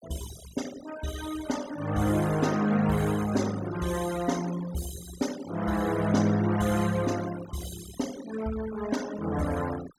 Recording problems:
noise reduction artefacts; signal-to-artefact ratio 14 dB

